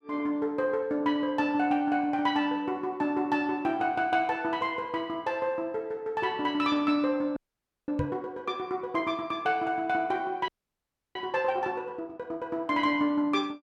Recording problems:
audio freezing; at 7.5 s for 0.5 s and at 10 s for 0.5 s
microphone bump; at 8 s; peak +1 dB vs average level

